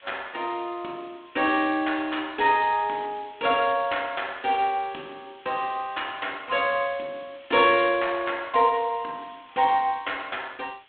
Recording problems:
phone line; 220 Hz to 3.9 kHz, G.726
background hiss; SNR 27 dB

